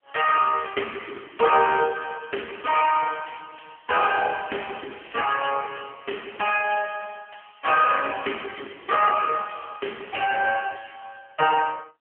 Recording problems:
telephone audio; 280 Hz to 3.1 kHz, AMR-NB
crackling; at 4.5 s; loose cable, SNR 24 dB

